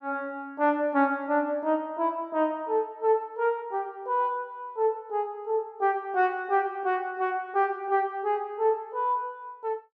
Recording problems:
none

